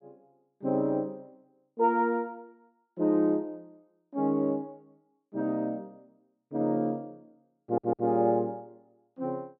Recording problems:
audio stuttering; at 7.5 s

